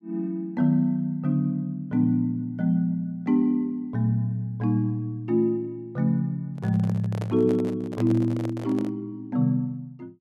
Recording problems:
handling noise; from 6.5 to 9 s; peak -7 dB vs average level

